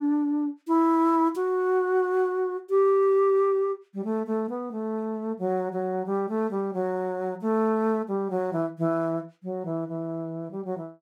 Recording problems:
none

